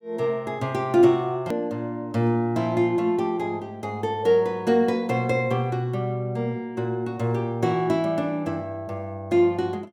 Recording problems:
click at an edit; at 1.5 s

